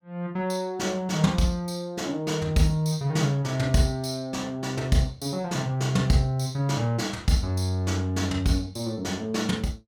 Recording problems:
none

